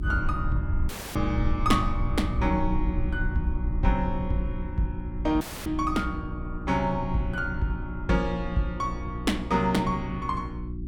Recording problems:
mains hum; 60 Hz, harmonics up to 360 Hz, SNR 8 dB
rumble; below 74 Hz, SNR 6 dB
audio cutting out; at 1 s and at 5.5 s

